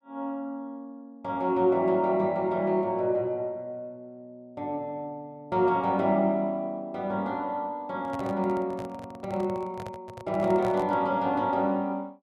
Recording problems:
microphone handling noise; from 8 to 11 s; peak -6 dB vs average level

